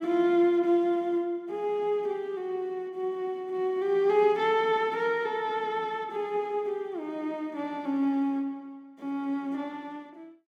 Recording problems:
none

